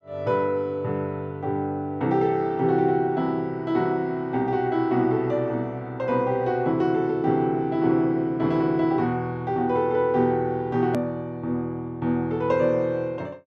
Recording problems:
hard cut with a click; at 11 s

